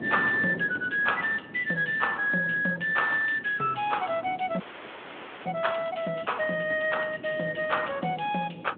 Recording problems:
phone line; 260 Hz to 3.4 kHz, Speex
wind on the microphone; below 450 Hz, SNR 17 dB
audio freezing; at 4.5 s for 1 s

